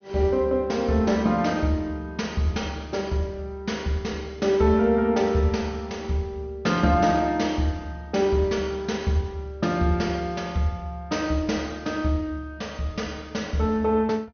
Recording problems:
treble missing; nothing above 6.3 kHz

